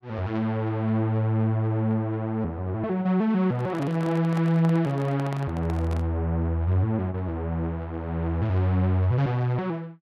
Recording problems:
microphone handling noise; from 3.5 to 6 s; peak -8 dB vs average level

